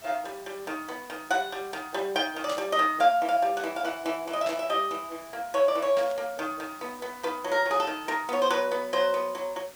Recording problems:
background hiss; slope -2 dB per octave, SNR 21 dB
burst of static; at 2.5 s, at 4.5 s and at 6 s; peak -7 dB vs average level

